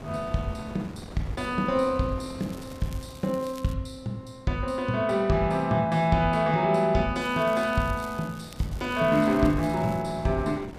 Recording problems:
wind noise; below 590 Hz, SNR 18 dB
crackle; from 2.5 to 3.5 s and from 7 to 10 s; loose cable, SNR 23 dB

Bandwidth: 14.5 kHz